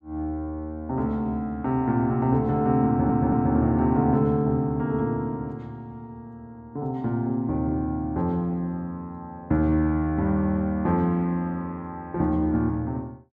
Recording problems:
audio stuttering; at 3 s

